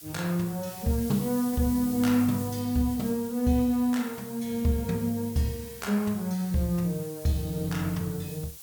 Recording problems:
hiss; SNR 14 dB

